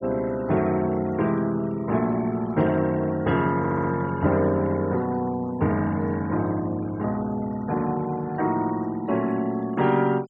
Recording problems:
noise reduction artefacts; signal-to-artefact ratio 22 dB
stutter; at 3.5 s

